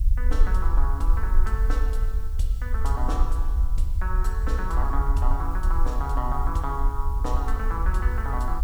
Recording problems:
hiss; SNR 21 dB
low-frequency rumble; below 54 Hz, SNR -6 dB

